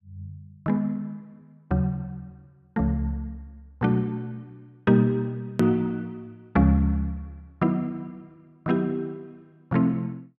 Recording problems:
hard cut with a click; at 5.5 s

